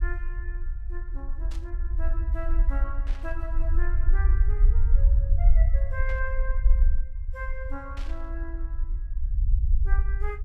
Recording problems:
low-frequency rumble; below 52 Hz, SNR -13 dB
static burst; 4 times, first at 1.5 s; peak -2 dB vs average level

